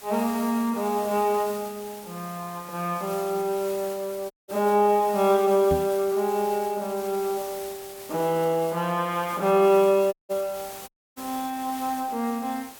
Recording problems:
background hiss; slope -1 dB per octave, SNR 16 dB
audio cutting out; at 4.5 s, at 10 s and at 11 s
knock on the microphone; at 5.5 s; peak 0 dB vs average level

